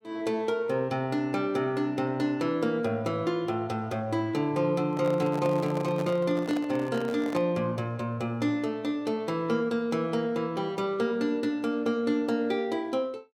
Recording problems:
handling noise; from 5 to 7.5 s; peak -5 dB vs average level

